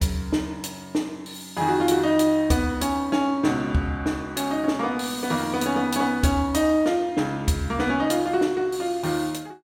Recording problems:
none

